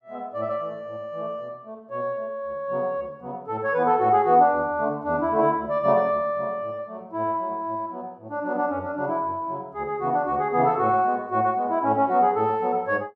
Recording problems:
none

